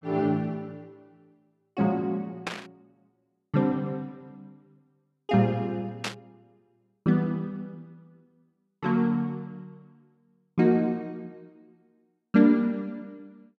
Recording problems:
static burst; at 2.5 s and at 6 s; peak 0 dB vs average level

